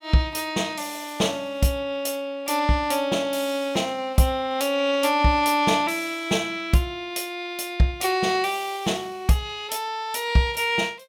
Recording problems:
none

